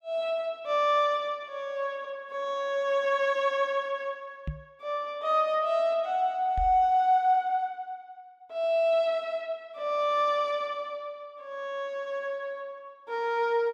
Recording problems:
microphone bump; at 4.5 s and at 6.5 s; peak -3 dB vs average level

